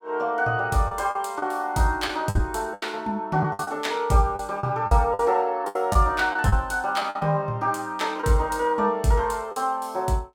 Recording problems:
packet loss; 8% of the sound replaced, filled with the last packet

